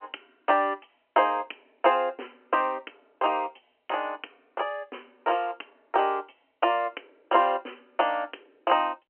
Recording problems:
telephone audio; 260 Hz to 3.1 kHz, G.711

